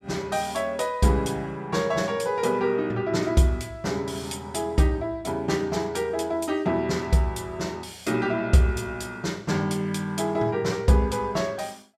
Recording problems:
none

